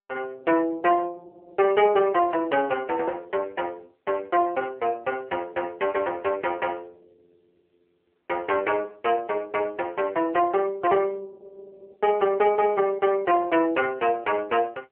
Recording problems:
telephone audio; 340 Hz to 3.3 kHz, AMR-NB

